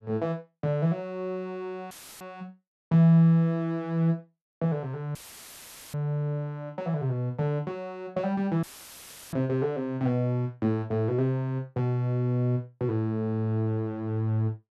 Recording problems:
dropout; at 2 s, at 5 s for 1 s and at 8.5 s for 0.5 s; filled with static

